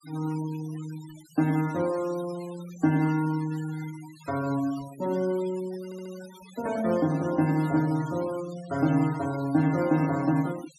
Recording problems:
noise reduction artefacts; signal-to-artefact ratio 19 dB
audio stuttering; at 6 s

